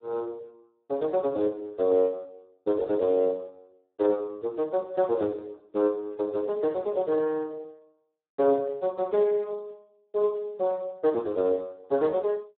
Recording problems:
telephone audio; 150 Hz to 2 kHz, Speex

